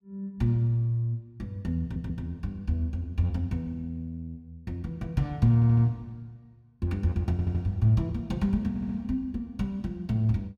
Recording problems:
stutter; 4 times, first at 2 s

